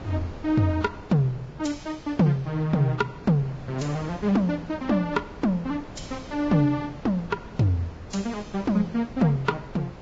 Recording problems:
lossy compression; Vorbis, log-spectral distance 2 dB, nothing above 7.3 kHz
wind noise; below 650 Hz, SNR 17 dB

